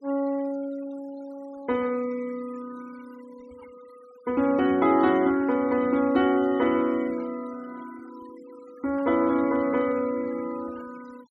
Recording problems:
noise reduction artefacts; signal-to-artefact ratio 25 dB

